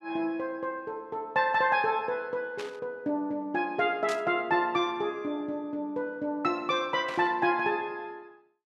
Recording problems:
static burst; at 2.5 s, at 4 s and at 7 s; peak -6 dB vs average level

